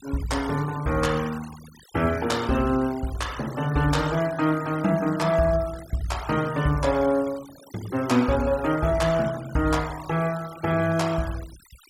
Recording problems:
denoising artefacts; signal-to-artefact ratio 18 dB

